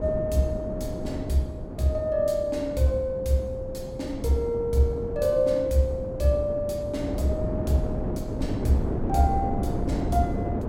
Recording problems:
wind noise; below 340 Hz, SNR 5 dB

